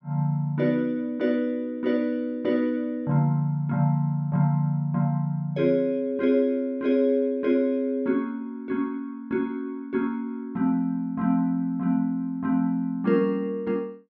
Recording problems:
none

